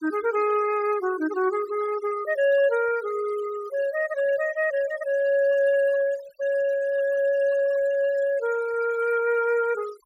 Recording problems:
noise reduction artefacts; signal-to-artefact ratio 18 dB

